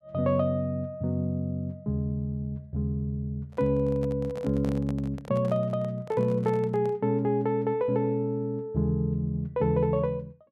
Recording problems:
handling noise; from 3.5 to 7 s; peak -7 dB vs average level

